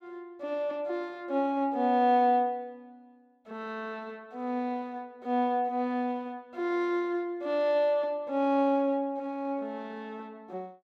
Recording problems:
none

